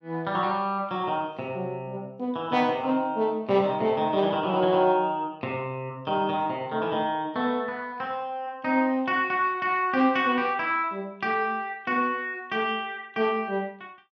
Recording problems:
none

